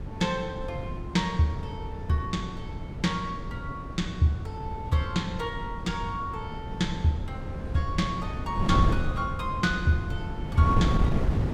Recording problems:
wind noise; below 190 Hz, SNR 3 dB

